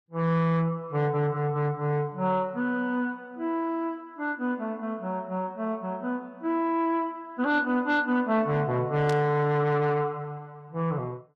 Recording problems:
lossy codec; Vorbis, log-spectral distance 2 dB
distorted audio; soft clipping, signal-to-distortion ratio 12 dB
static burst; at 9 s; peak -7 dB vs average level

